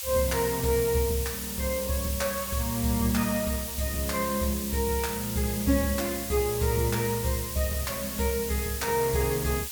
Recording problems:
hiss; slope +5 dB per octave, SNR 5 dB

